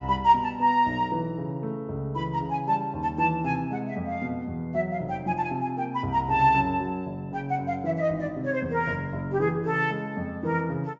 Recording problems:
low-pass filter; nothing above 7.3 kHz

